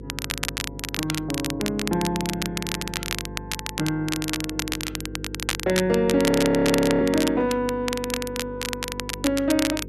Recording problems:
hum; 50 Hz, harmonics up to 500 Hz, SNR 14 dB
crackling; vinyl, SNR 5 dB
frozen audio; at 6.5 s for 1 s

